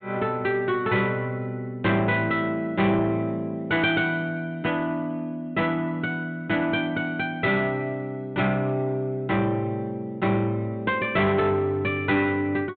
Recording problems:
low-pass filter; nothing above 4 kHz
distorted audio; soft clipping, signal-to-distortion ratio 11 dB

